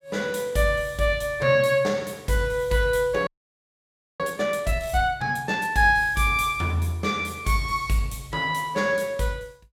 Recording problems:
frozen audio; at 3.5 s for 1 s

